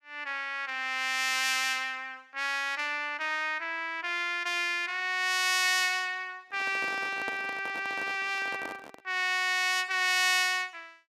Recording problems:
microphone handling noise; from 6.5 to 9 s; peak -6 dB vs average level

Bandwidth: 15 kHz